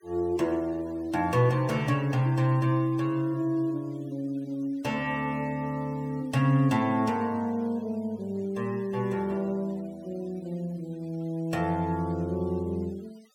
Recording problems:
noise reduction artefacts; signal-to-artefact ratio 27 dB

